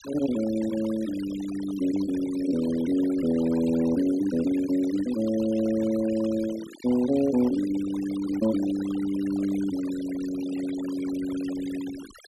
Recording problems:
noise reduction artefacts; signal-to-artefact ratio 16 dB

